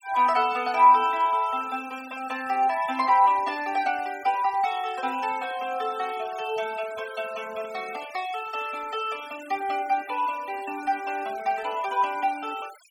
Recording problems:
noise reduction artefacts; signal-to-artefact ratio 19 dB

